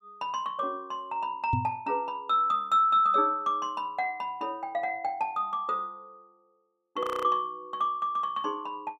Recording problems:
microphone bump; at 1.5 s; peak +3 dB vs average level
frozen audio; at 7 s

